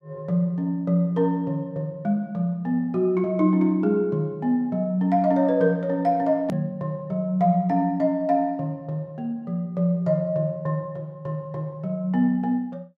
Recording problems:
hard cut with a click; at 6.5 s

